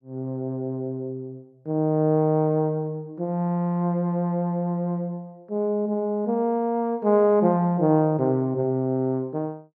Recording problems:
none

